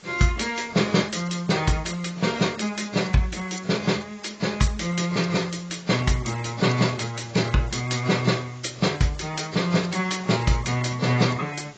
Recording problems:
lossy codec; AAC, log-spectral distance 9 dB, nothing above 7.8 kHz
hiss; slope -1 dB per octave, SNR 24 dB

